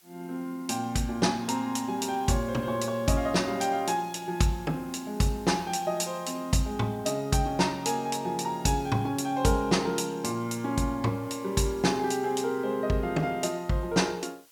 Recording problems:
background hiss; slope +1 dB per octave, SNR 26 dB

